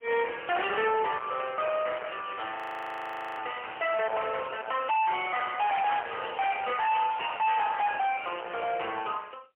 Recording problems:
phone line; 370 Hz to 3.3 kHz, AMR-NB, then MP3
distorted audio; hard clipping, uneven, signal-to-distortion ratio 6 dB
audio freezing; at 2.5 s for 1 s

